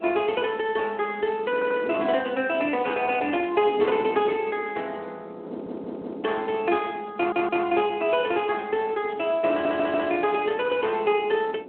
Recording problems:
telephone audio; 240 Hz to 3.3 kHz, Speex
wind noise; below 490 Hz, SNR 15 dB
audio stuttering; 4 times, first at 1.5 s

